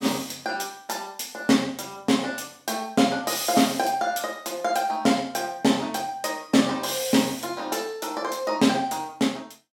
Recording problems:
none

